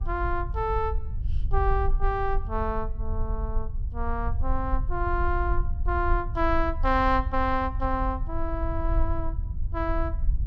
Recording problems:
rumble; below 58 Hz, SNR 2 dB

